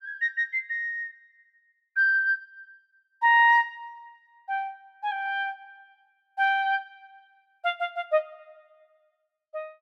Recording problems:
none

